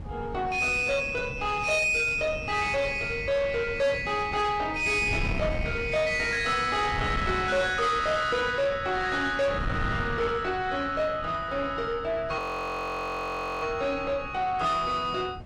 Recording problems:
lossy codec; AAC, log-spectral distance 2 dB, nothing above 16.1 kHz
distorted audio; soft clipping, signal-to-distortion ratio 11 dB
wind noise; below 310 Hz, SNR 11 dB
audio freezing; at 12 s for 1 s

